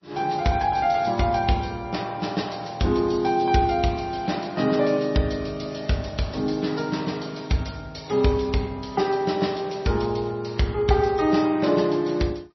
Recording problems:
lossy codec; MP3, log-spectral distance 5 dB, nothing above 5.8 kHz

